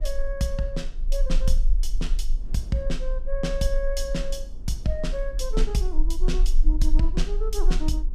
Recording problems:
low-frequency rumble; below 36 Hz, strongest tone 18 Hz, SNR -2 dB
wind on the microphone; below 270 Hz, SNR 19 dB

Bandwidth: 14.5 kHz